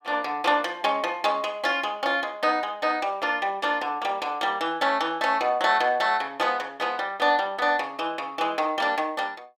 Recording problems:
none

